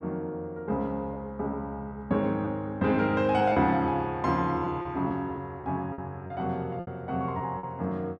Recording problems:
packet loss; 5% of the sound replaced, filled with repeated pitch periods

